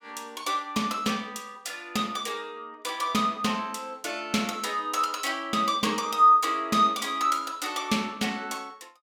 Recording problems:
none

